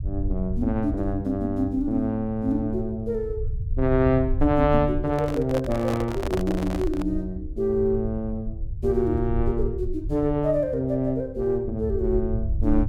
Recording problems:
rumble; below 78 Hz, SNR 8 dB
handling noise; from 5 to 7 s; peak -2 dB vs average level

